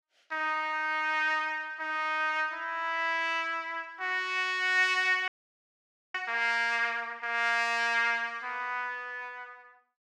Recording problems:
audio freezing; at 5.5 s for 1 s

